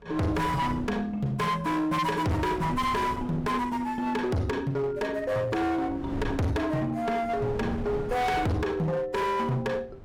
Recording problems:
distorted audio; hard clipping, uneven, signal-to-distortion ratio 6 dB
wind noise; below 360 Hz, SNR 11 dB

